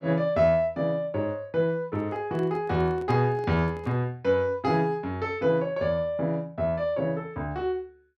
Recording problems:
microphone handling noise; from 2 to 4 s; peak -9 dB vs average level

